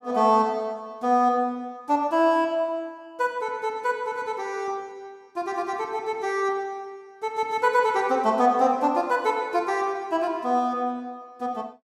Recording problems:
none

